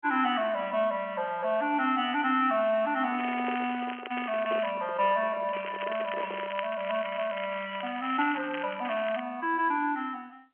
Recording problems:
phone line; 220 Hz to 3.2 kHz, G.711
microphone handling noise; from 3 to 6.5 s; peak -4 dB vs average level
crackle; from 3 to 4.5 s and from 5.5 to 9 s; loose cable, SNR 12 dB

